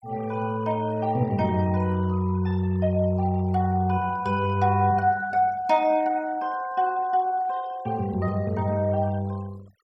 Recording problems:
noise reduction artefacts; signal-to-artefact ratio 24 dB

